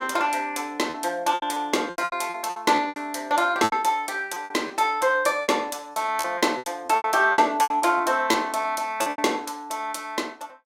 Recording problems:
packet loss; 14% of the sound replaced, filled with repeated pitch periods

